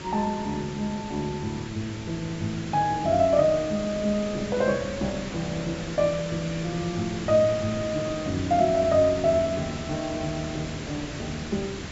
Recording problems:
treble cut off; nothing above 8 kHz
background hiss; SNR 10 dB

